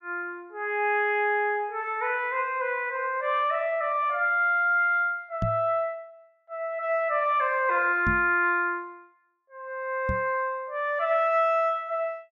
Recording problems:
microphone bump; at 5.5 s, at 8 s and at 10 s; peak 0 dB vs average level

